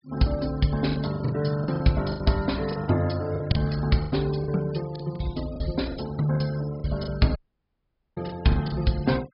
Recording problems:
low-pass filter; nothing above 5.5 kHz
noise reduction artefacts; signal-to-artefact ratio 20 dB
packet loss; 12% of the sound replaced, filled with the last packet
dropout; at 7.5 s for 1 s

